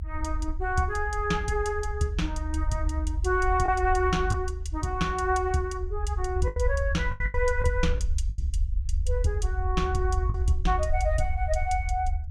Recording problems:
rumble; below 74 Hz, SNR 2 dB
lost packets; 3% of the sound replaced, filled with the last packet

